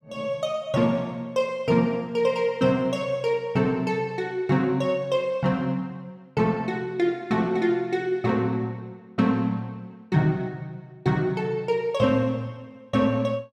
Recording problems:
none

